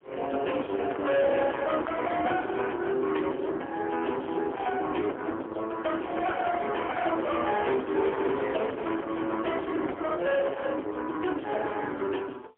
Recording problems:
telephone audio; 240 Hz to 3.3 kHz, AMR-NB, then MP3
distortion; soft clipping, signal-to-distortion ratio 7 dB

